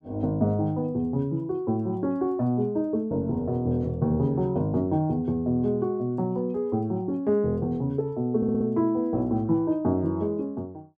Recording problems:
stutter; at 8.5 s

